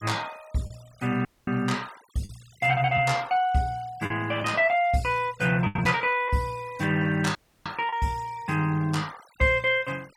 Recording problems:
noise reduction artefacts; signal-to-artefact ratio 24 dB
packet loss; 3% of the sound replaced, filled with the last packet
dropout; at 1.5 s and at 7.5 s

